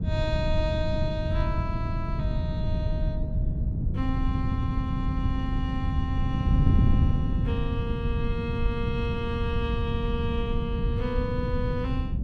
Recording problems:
wind on the microphone; below 140 Hz, SNR -5 dB

